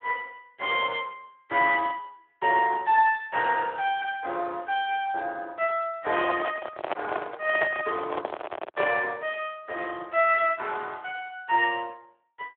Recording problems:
telephone audio; 340 Hz to 3.5 kHz, Speex
handling noise; from 6 to 9 s; peak +2 dB vs average level

